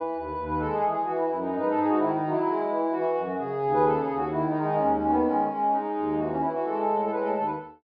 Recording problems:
treble cut off; nothing above 5.5 kHz

